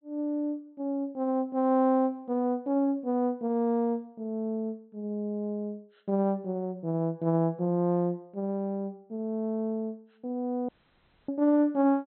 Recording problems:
treble missing; nothing above 4.1 kHz
dropout; at 11 s for 0.5 s

